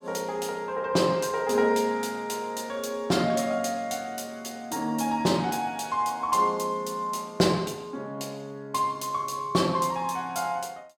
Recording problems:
none

